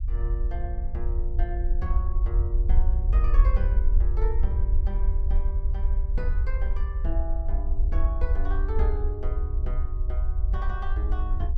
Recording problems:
rumble; below 56 Hz, SNR -10 dB

